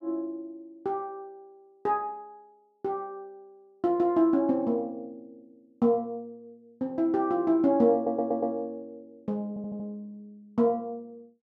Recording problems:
audio stuttering; at 8 s and at 9.5 s

